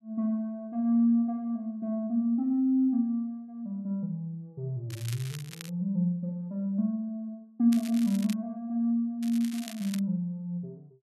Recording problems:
crackling; at 5 s, at 7.5 s and at 9 s; loose cable, SNR 16 dB

